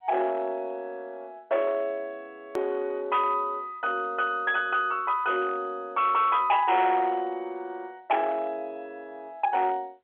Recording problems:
phone line; 320 Hz to 3.8 kHz, G.711
distorted audio; hard clipping, signal-to-distortion ratio 11 dB
click at an edit; at 2.5 s

